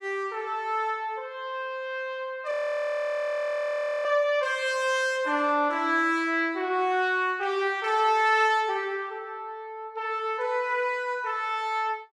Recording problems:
audio freezing; at 2.5 s for 1.5 s

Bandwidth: 14.5 kHz